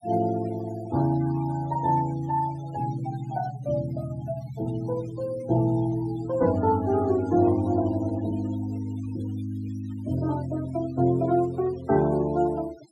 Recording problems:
noise reduction artefacts; signal-to-artefact ratio 19 dB

